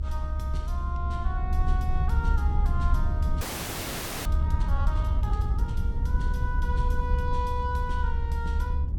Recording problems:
rumble; below 72 Hz, SNR -8 dB
frozen audio; at 3.5 s for 1 s

